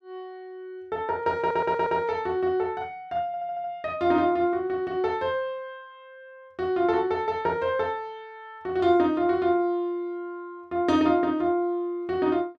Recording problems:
audio stuttering; at 1.5 s and at 3.5 s

